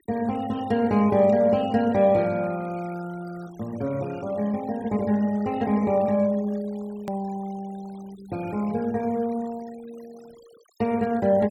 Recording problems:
denoising artefacts; signal-to-artefact ratio 24 dB
click at an edit; at 7 s

